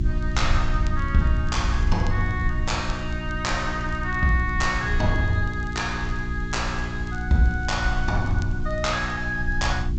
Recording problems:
treble missing; nothing above 8 kHz
hum; 60 Hz, harmonics up to 360 Hz, SNR 7 dB
background hiss; slope -1 dB per octave, SNR 28 dB
low-frequency rumble; below 68 Hz, SNR 4 dB
crackle; vinyl, SNR 27 dB

